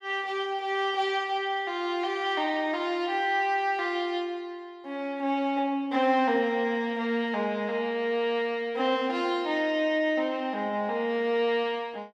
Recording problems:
none

